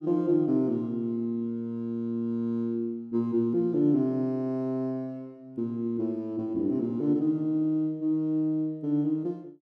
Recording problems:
none

